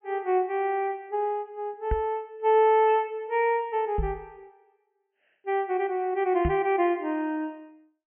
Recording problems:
treble cut off; nothing above 3.1 kHz
knock on the microphone; at 2 s, at 4 s and at 6.5 s; peak +1 dB vs average level

